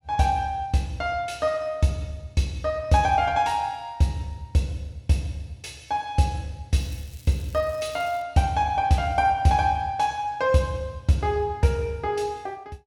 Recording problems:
crackle; from 6.5 to 8 s; loose cable, SNR 25 dB

